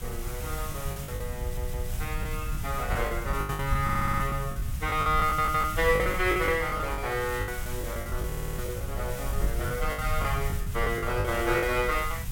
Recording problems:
hiss; SNR 12 dB
low-frequency rumble; below 100 Hz, SNR 5 dB
lost packets; 13% of the sound replaced, filled with the last packet
audio stuttering; 4 times, first at 1.5 s

